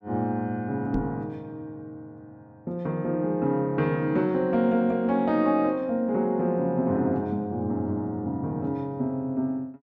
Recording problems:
microphone bump; at 1 s; peak 0 dB vs average level

